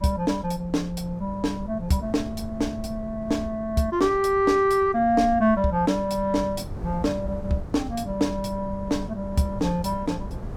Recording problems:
wind noise; below 170 Hz, SNR 13 dB

